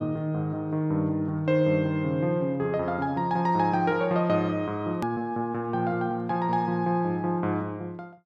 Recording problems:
edit click; at 5 s

